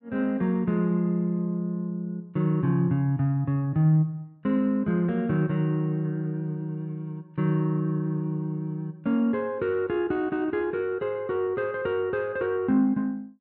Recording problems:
none

